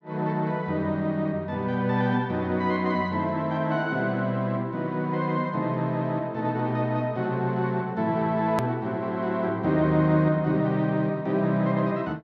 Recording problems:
hard cut with a click; at 8.5 s

